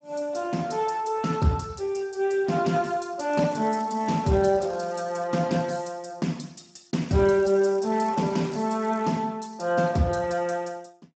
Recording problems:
codec artefacts; Speex, log-spectral distance 5 dB, nothing above 7.8 kHz
crackle; from 3.5 to 5 s and from 7 to 9 s; loose cable, SNR 27 dB

